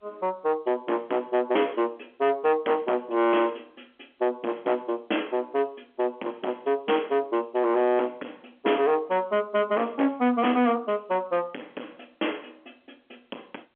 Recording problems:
telephone audio; 220 Hz to 3.4 kHz, G.711
distortion; soft clipping, signal-to-distortion ratio 8 dB

